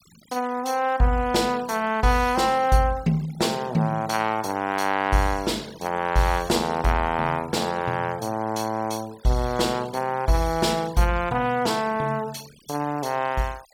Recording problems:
noise reduction artefacts; signal-to-artefact ratio 21 dB

